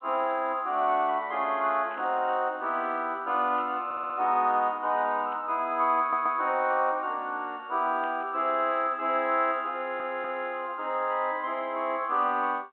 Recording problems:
telephone audio; 220 Hz to 3.3 kHz, G.726
static burst; 4 times, first at 2 s; peak -18 dB vs average level
stutter; at 4 s, at 6 s and at 10 s

